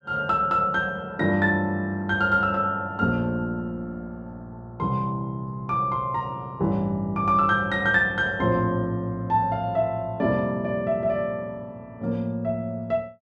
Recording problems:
none

